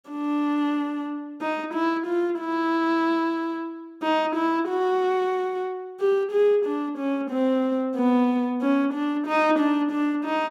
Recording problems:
none

